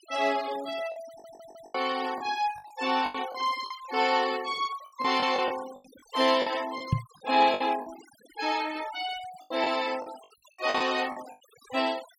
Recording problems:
denoising artefacts; signal-to-artefact ratio 16 dB
lost packets; 9% of the sound replaced, filled with the last packet
audio stuttering; at 1 s
knock on the microphone; at 7 s; peak +7 dB vs average level

